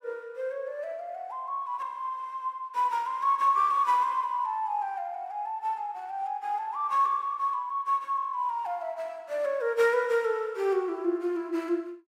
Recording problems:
none

